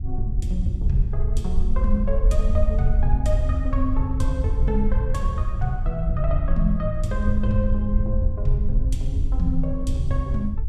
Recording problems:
low-frequency rumble; below 54 Hz, SNR -1 dB

